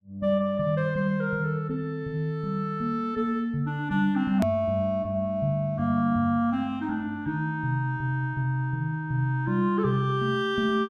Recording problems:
hard cut with a click; at 4.5 s

